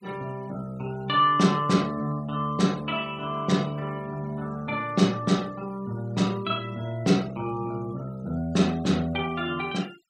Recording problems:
denoising artefacts; signal-to-artefact ratio 24 dB

